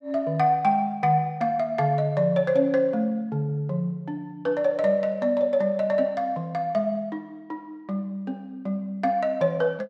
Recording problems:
none

